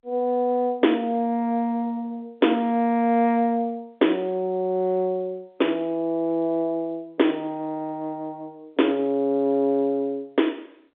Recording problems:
telephone audio; 190 Hz to 3.6 kHz, G.711

